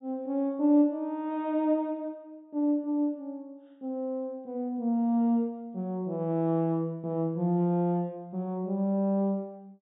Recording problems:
low-pass filter; nothing above 4 kHz

